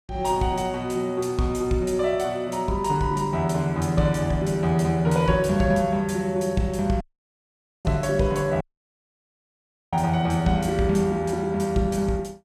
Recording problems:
dropout; at 7 s for 1 s and at 8.5 s for 1.5 s

